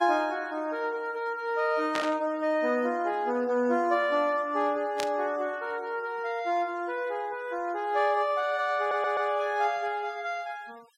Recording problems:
noise reduction artefacts; signal-to-artefact ratio 26 dB
static burst; at 2 s and at 5 s; peak -1 dB vs average level
stutter; at 9 s

